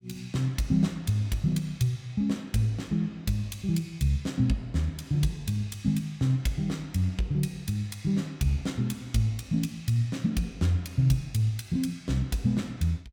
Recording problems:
none

